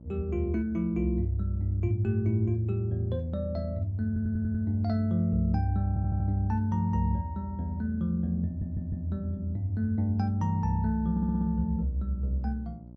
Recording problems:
electrical hum; 60 Hz, harmonics up to 660 Hz, SNR 19 dB
audio stuttering; 4 times, first at 4 s

